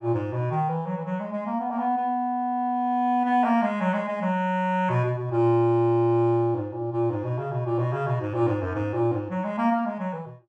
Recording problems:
none

